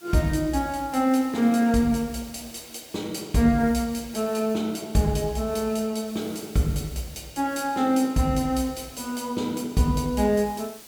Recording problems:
hiss; SNR 21 dB

